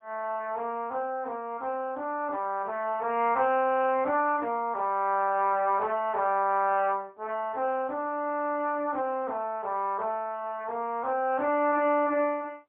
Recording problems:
telephone audio; 260 Hz to 3.1 kHz, AMR-NB, then MP3

